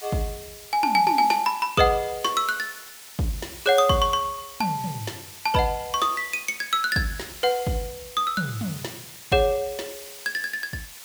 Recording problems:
hiss; slope +2 dB per octave, SNR 15 dB

